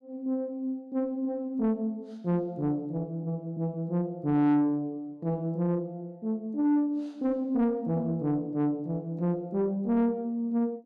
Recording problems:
distortion; soft clipping, signal-to-distortion ratio 11 dB

